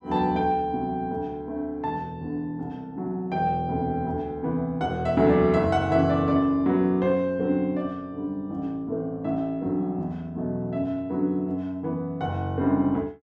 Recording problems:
none

